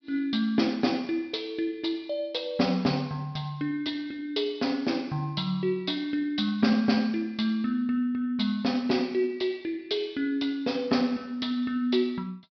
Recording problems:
treble cut off; nothing above 5.5 kHz

